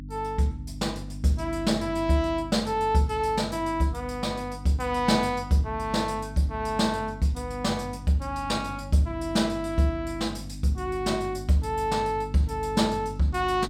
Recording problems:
hum; 50 Hz, harmonics up to 300 Hz, SNR 13 dB

